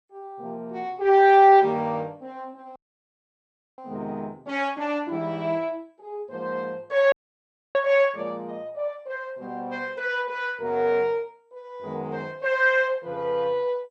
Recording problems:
codec artefacts; MP2, log-spectral distance 2 dB
audio cutting out; at 3 s for 1 s and at 7 s for 0.5 s

